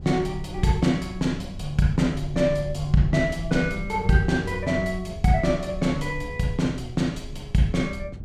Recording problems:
low-frequency rumble; below 88 Hz, SNR 13 dB

